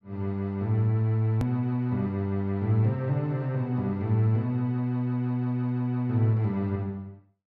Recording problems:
edit click; at 1.5 s

